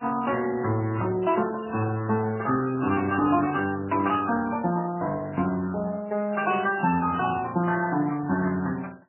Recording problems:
lossy codec; Speex, then MP3, log-spectral distance 4 dB, nothing above 2.7 kHz

